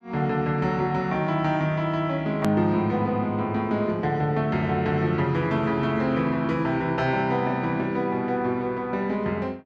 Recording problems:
hard cut with a click; at 2.5 s

